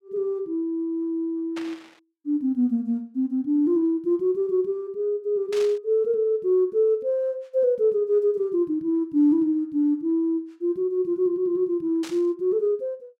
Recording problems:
static burst; at 1.5 s, at 5.5 s and at 12 s; peak -10 dB vs average level

